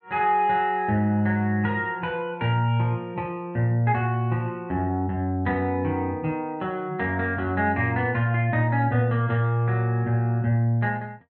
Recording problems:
low-pass filter; nothing above 4.6 kHz

